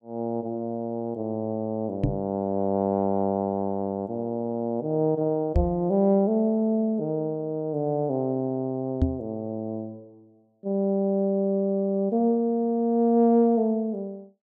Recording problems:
knock on the microphone; at 2 s, at 5.5 s and at 9 s; peak +6 dB vs average level

